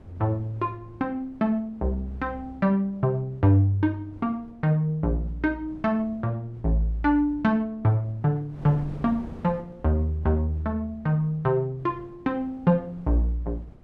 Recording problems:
wind noise; below 330 Hz, SNR 22 dB

